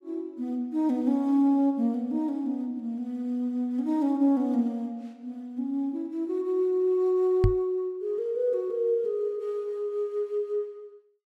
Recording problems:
microphone bump; at 7.5 s; peak +8 dB vs average level

